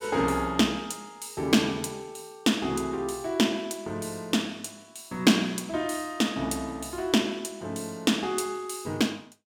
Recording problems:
none

